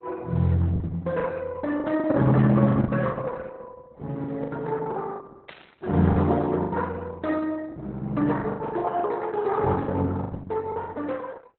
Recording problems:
lossy codec; Opus, then Opus, log-spectral distance 3 dB, nothing above 4 kHz
packet loss; 11% of the sound replaced, filled with the last packet
burst of static; at 5.5 s; peak -11 dB vs average level

